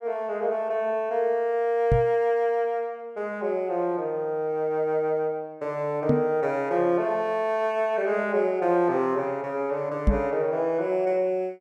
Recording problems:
microphone bump; at 2 s, at 6 s and at 10 s; peak +7 dB vs average level

